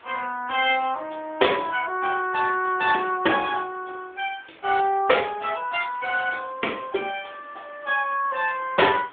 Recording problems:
telephone audio; 260 Hz to 3.5 kHz, AMR-NB
hiss; SNR 26 dB

